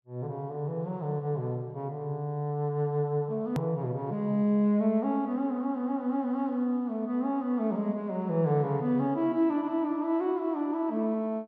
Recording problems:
click at an edit; at 3.5 s

